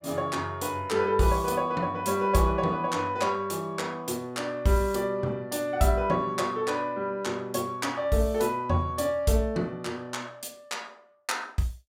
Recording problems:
none

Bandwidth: 16.5 kHz